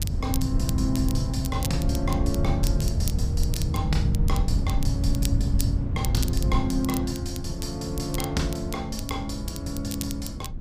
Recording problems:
mains hum; 60 Hz, harmonics up to 660 Hz, SNR 20 dB
rumble; below 110 Hz, SNR -2 dB
crackle; vinyl, SNR 9 dB

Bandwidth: 15 kHz